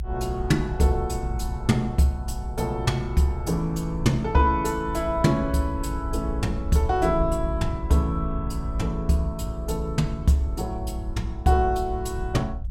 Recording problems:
low-frequency rumble; below 68 Hz, SNR 8 dB

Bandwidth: 16 kHz